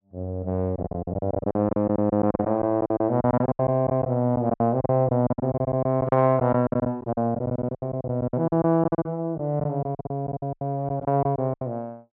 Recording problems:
packet loss; 19% of the sound replaced, filled with silence

